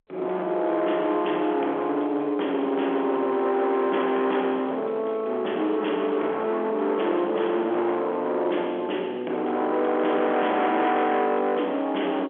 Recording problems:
telephone audio; 320 Hz to 3.4 kHz, G.711
distorted audio; hard clipping, uneven, signal-to-distortion ratio 8 dB

